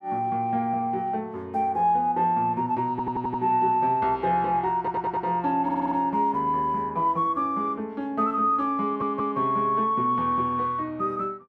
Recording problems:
audio stuttering; 4 times, first at 3 s

